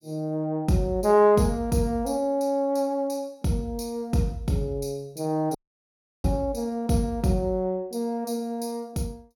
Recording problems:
dropout; at 5.5 s for 0.5 s

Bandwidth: 17 kHz